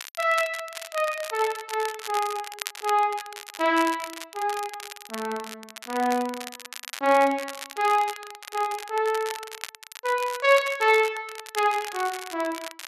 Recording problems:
crackle; vinyl, SNR 12 dB

